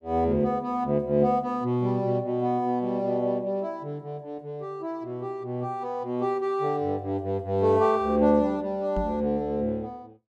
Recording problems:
microphone thump; at 9 s; peak -2 dB vs average level

